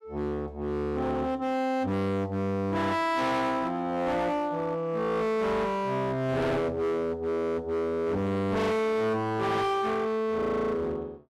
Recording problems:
distorted audio; hard clipping, signal-to-distortion ratio 6 dB

